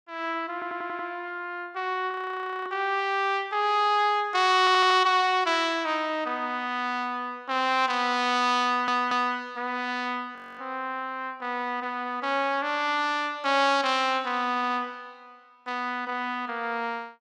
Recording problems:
audio stuttering; 4 times, first at 0.5 s
audio freezing; at 2 s for 0.5 s and at 10 s

